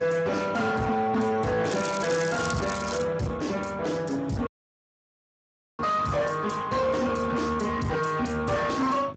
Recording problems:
lossy compression; Speex, log-spectral distance 6 dB, nothing above 7.6 kHz
distortion; soft clipping, signal-to-distortion ratio 7 dB
electrical hum; 50 Hz, harmonics up to 550 Hz, SNR 20 dB
crackling; from 1.5 to 3 s; loose cable, SNR 12 dB
audio cutting out; at 4.5 s for 1.5 s

